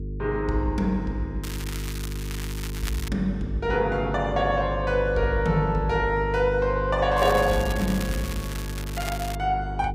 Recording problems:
hum; 50 Hz, harmonics up to 450 Hz, SNR 7 dB
crackle; from 1.5 to 3 s and from 7 to 9.5 s; loose cable, SNR 12 dB

